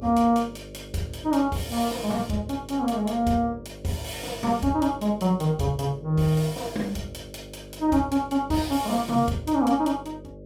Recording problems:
hum; 50 Hz, harmonics up to 600 Hz, SNR 17 dB

